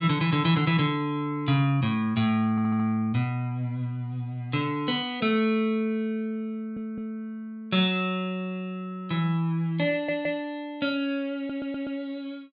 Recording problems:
treble missing; nothing above 4.8 kHz
audio stuttering; 4 times, first at 2.5 s

